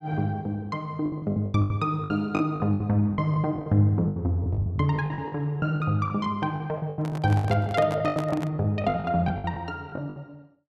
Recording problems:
packet loss; 17% of the sound replaced, filled with the last packet
microphone handling noise; from 7 to 8.5 s; peak -3 dB vs average level

